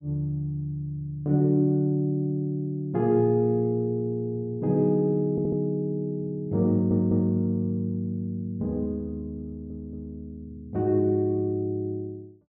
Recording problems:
audio stuttering; at 5.5 s, at 6.5 s and at 9.5 s

